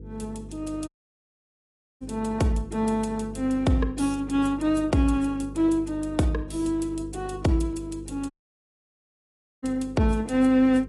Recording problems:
lossy codec; AAC, log-spectral distance 2 dB, nothing above 10.7 kHz
mains hum; 50 Hz, harmonics up to 500 Hz, SNR 15 dB
dropout; at 1 s for 1 s and at 8.5 s for 1.5 s

